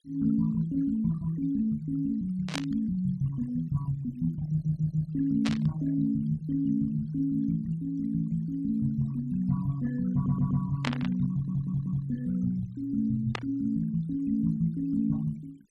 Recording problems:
noise reduction artefacts; signal-to-artefact ratio 25 dB
burst of static; 4 times, first at 2.5 s; peak 0 dB vs average level
stutter; at 4.5 s, at 10 s and at 11 s

